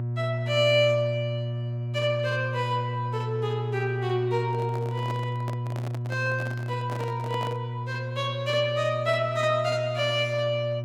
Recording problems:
electrical hum; 60 Hz, harmonics up to 600 Hz, SNR 4 dB
handling noise; from 4.5 to 7.5 s; peak -6 dB vs average level

